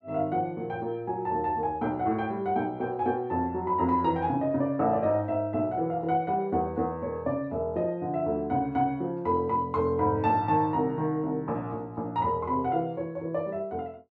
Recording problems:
none

